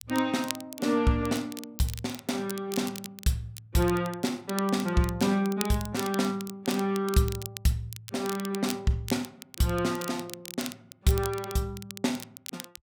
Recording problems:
crackle; vinyl, SNR 12 dB

